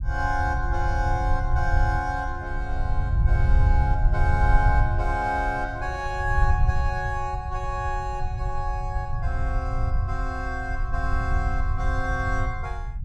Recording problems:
rumble; below 84 Hz, SNR -2 dB

